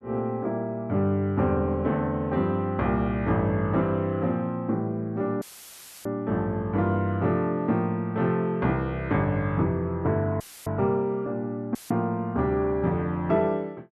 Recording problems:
audio cutting out; at 5.5 s for 0.5 s, at 10 s and at 12 s; filled with static

